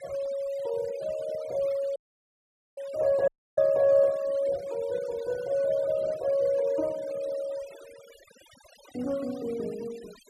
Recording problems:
denoising artefacts; signal-to-artefact ratio 22 dB
audio cutting out; at 2 s for 1 s and at 3.5 s

